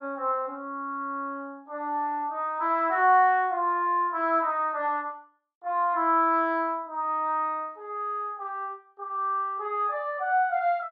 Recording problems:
none

